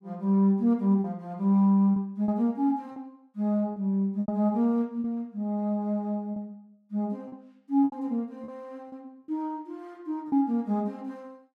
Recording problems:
packet loss; 6% of the sound replaced, filled with repeated pitch periods

